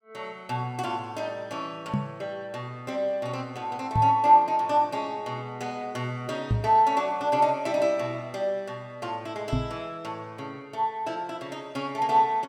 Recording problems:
knock on the microphone; 4 times, first at 2 s; peak +5 dB vs average level

